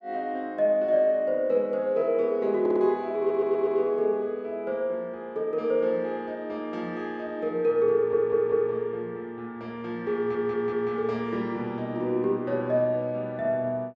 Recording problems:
stutter; 4 times, first at 2.5 s

